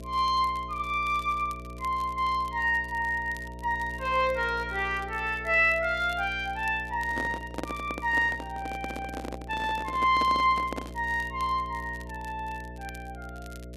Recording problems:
mains hum; 60 Hz, harmonics up to 660 Hz, SNR 15 dB
crackle; vinyl, SNR 26 dB
handling noise; from 7 to 11 s; peak -2 dB vs average level

